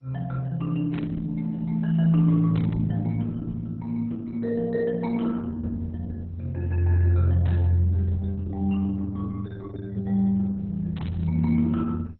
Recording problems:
codec artefacts; Opus, then MP2, log-spectral distance 2 dB
static burst; 4 times, first at 1 s; peak -12 dB vs average level

